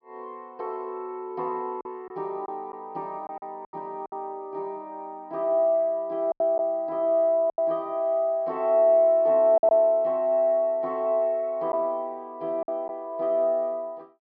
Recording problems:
treble cut off; nothing above 5.5 kHz
lost packets; 4% of the sound replaced, filled with silence

